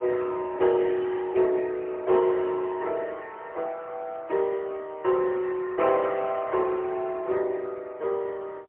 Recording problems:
phone line; 320 Hz to 3.2 kHz, AMR-NB, then MP3

